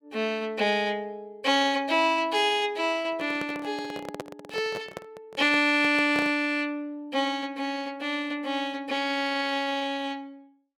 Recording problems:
handling noise; from 3 to 6.5 s; peak -4 dB vs average level

